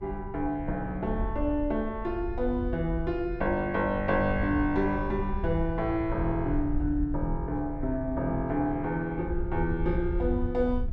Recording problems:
wind noise; below 76 Hz, SNR 7 dB

